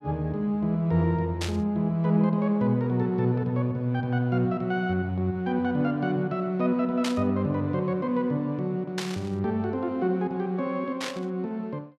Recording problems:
static burst; 4 times, first at 1.5 s; peak -1 dB vs average level

